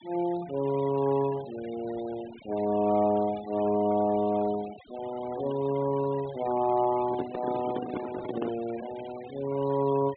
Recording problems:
treble missing; nothing above 4 kHz
denoising artefacts; signal-to-artefact ratio 18 dB
handling noise; from 7 to 8.5 s; peak -1 dB vs average level

